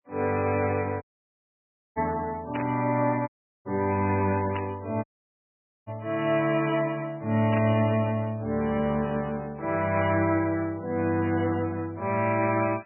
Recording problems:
codec artefacts; MP3, log-spectral distance 3 dB, nothing above 2.5 kHz
dropout; at 1 s for 1 s, at 3.5 s and at 5 s for 1 s
burst of static; 4 times, first at 2.5 s; peak -5 dB vs average level

